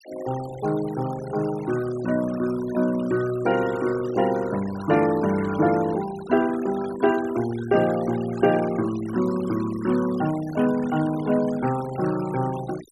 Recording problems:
noise reduction artefacts; signal-to-artefact ratio 16 dB

